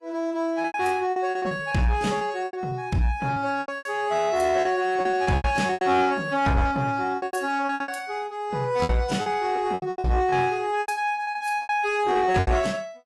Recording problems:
lossy codec; AAC, log-spectral distance 2 dB, nothing above 12.3 kHz
distortion; soft clipping, signal-to-distortion ratio 12 dB
packet loss; 15% of the sound replaced, filled with repeated pitch periods

